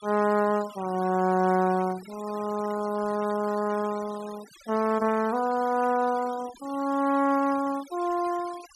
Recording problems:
noise reduction artefacts; signal-to-artefact ratio 20 dB

